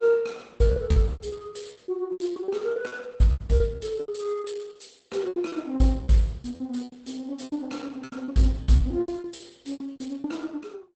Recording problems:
lossy codec; Opus, log-spectral distance 3 dB, nothing above 8.2 kHz
packet loss; 18% of the sound replaced, filled with repeated pitch periods

